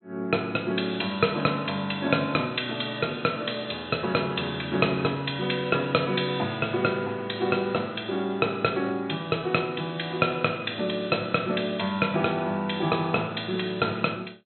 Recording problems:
low-pass filter; nothing above 4.1 kHz

